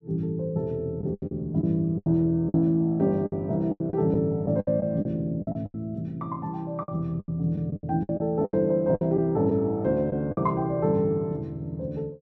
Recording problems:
lost packets; 11% of the sound replaced, filled with the last packet

